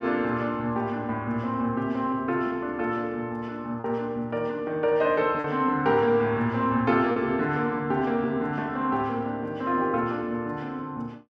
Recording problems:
packet loss; 1.1% of the sound replaced, filled with repeated pitch periods

